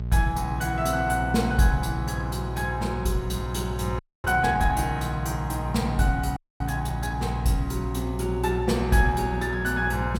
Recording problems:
electrical hum; 60 Hz, harmonics up to 420 Hz, SNR 6 dB
frozen audio; at 4 s and at 6.5 s

